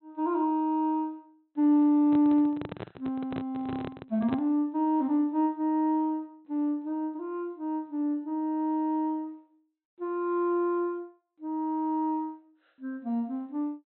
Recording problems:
low-pass filter; nothing above 4 kHz
microphone handling noise; from 2 to 4.5 s; peak -3 dB vs average level

